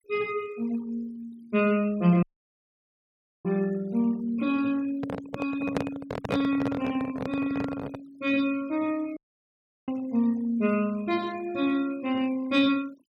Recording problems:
denoising artefacts; signal-to-artefact ratio 20 dB
audio cutting out; at 2 s for 1 s and at 9 s for 0.5 s
handling noise; from 5 to 8 s; peak +3 dB vs average level

